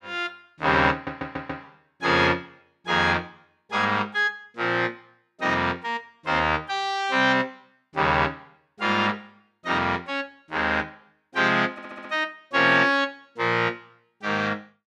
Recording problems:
stutter; at 1 s and at 12 s

